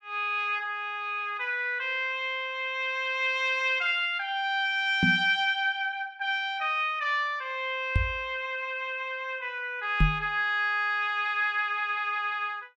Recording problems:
microphone thump; at 5 s, at 8 s and at 10 s; peak +6 dB vs average level

